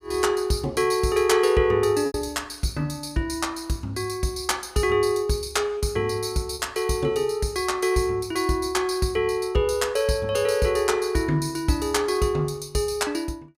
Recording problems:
packet loss; 1.4% of the sound replaced, filled with repeated pitch periods

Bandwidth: 15.5 kHz